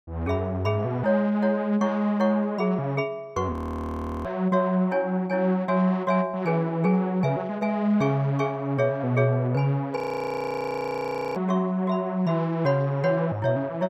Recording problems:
frozen audio; at 3.5 s for 0.5 s and at 10 s for 1.5 s

